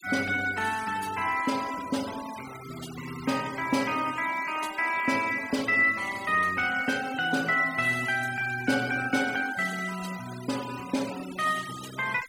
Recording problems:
denoising artefacts; signal-to-artefact ratio 15 dB

